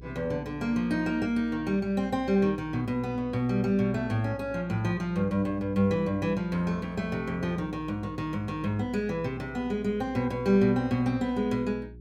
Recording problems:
hum; 60 Hz, harmonics up to 420 Hz, SNR 19 dB

